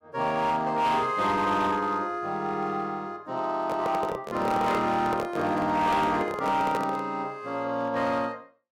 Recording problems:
distorted audio; hard clipping, signal-to-distortion ratio 12 dB
handling noise; from 3.5 to 7 s; peak 0 dB vs average level

